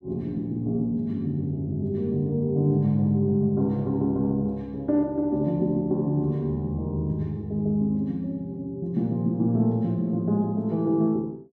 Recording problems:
none

